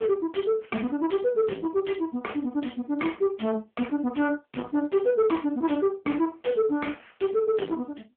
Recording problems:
phone line; 170 Hz to 3 kHz, AMR-NB
distorted audio; soft clipping, signal-to-distortion ratio 8 dB

